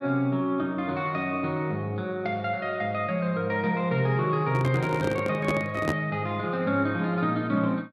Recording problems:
microphone handling noise; from 4.5 to 6 s; peak +3 dB vs average level

